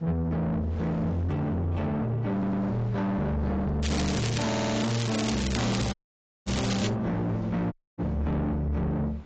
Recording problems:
lossy codec; AAC, log-spectral distance 4 dB
distortion; soft clipping, signal-to-distortion ratio 8 dB
wind on the microphone; below 890 Hz, SNR 21 dB
stutter; at 2.5 s and at 4.5 s
crackle; from 4 to 7 s; loose cable, SNR 7 dB
audio cutting out; at 6 s for 0.5 s and at 7.5 s

